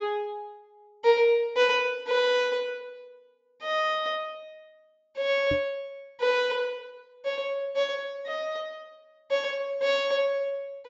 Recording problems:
treble missing; nothing above 7.3 kHz
knock on the microphone; at 5.5 s; peak -2 dB vs average level

